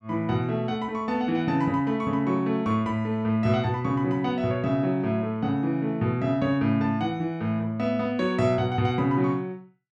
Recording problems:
none

